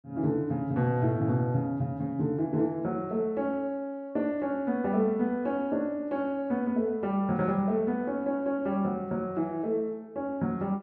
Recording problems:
none

